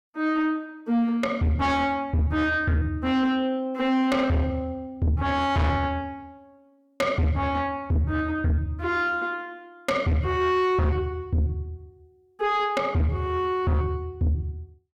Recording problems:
distorted audio; soft clipping, signal-to-distortion ratio 7 dB

